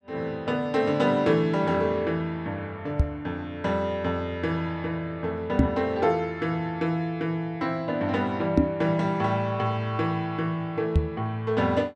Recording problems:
knock on the microphone; 4 times, first at 3 s; peak +9 dB vs average level

